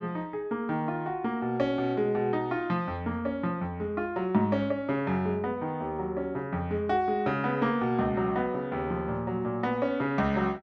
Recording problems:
none

